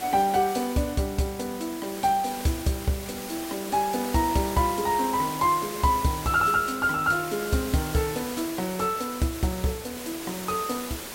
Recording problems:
hiss; slope -3 dB per octave, SNR 10 dB

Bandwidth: 16 kHz